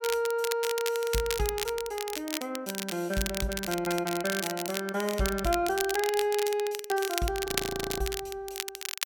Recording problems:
crackling; vinyl, SNR 5 dB
audio freezing; at 7.5 s for 0.5 s

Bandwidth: 17 kHz